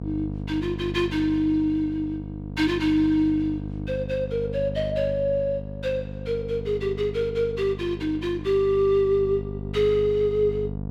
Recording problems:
hum; 50 Hz, harmonics up to 750 Hz, SNR 9 dB

